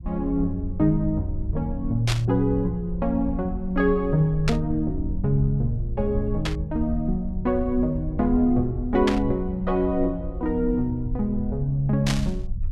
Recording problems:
low-frequency rumble; below 72 Hz, SNR 9 dB
burst of static; 5 times, first at 2 s; peak +1 dB vs average level

